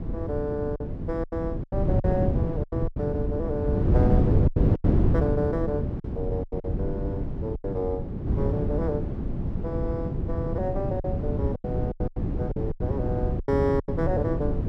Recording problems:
wind on the microphone; below 210 Hz, SNR -3 dB
lost packets; 10% of the sound replaced, filled with silence

